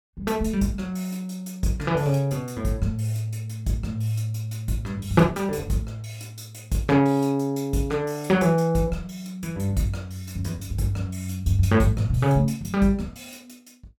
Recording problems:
none

